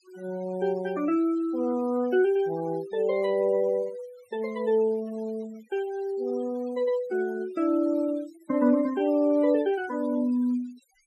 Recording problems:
noise reduction artefacts; signal-to-artefact ratio 23 dB

